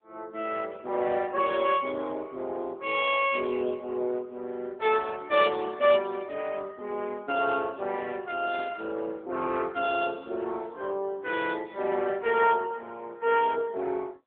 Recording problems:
telephone audio; 280 Hz to 3.5 kHz, AMR-NB

